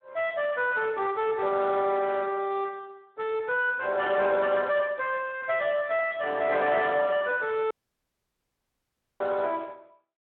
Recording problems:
phone line; 300 Hz to 2.9 kHz, Speex
distortion; soft clipping, signal-to-distortion ratio 11 dB
dropout; at 7.5 s for 1.5 s

